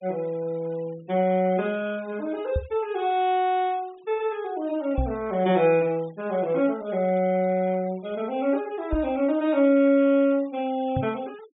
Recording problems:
treble missing; nothing above 4 kHz
noise reduction artefacts; signal-to-artefact ratio 26 dB
knock on the microphone; 4 times, first at 2.5 s; peak +2 dB vs average level

